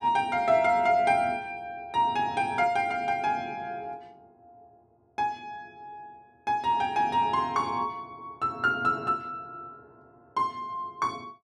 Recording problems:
none

